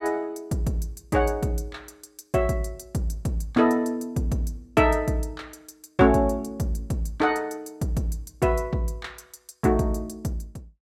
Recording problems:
none

